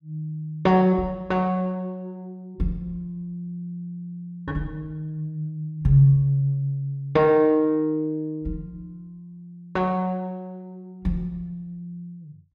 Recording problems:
none

